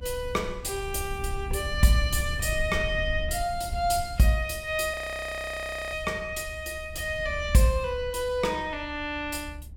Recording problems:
rumble; below 78 Hz, SNR 10 dB
frozen audio; at 5 s for 1 s

